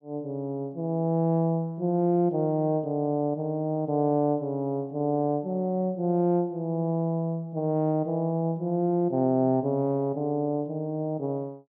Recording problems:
none

